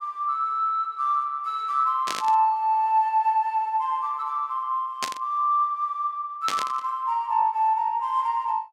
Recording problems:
static burst; at 2 s, at 5 s and at 6.5 s; peak +1 dB vs average level

